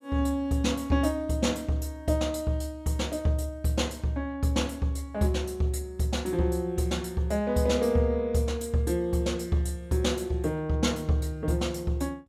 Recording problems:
none

